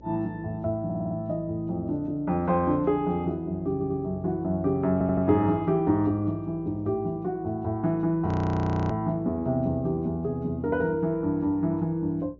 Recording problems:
treble missing; nothing above 7 kHz
electrical hum; 60 Hz, harmonics up to 600 Hz, SNR 24 dB
stutter; at 1 s, at 3.5 s and at 5 s
frozen audio; at 8.5 s for 0.5 s

